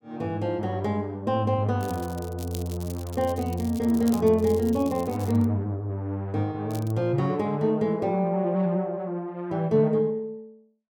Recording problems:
crackle; from 2 to 5.5 s and at 6.5 s; loose cable, SNR 19 dB

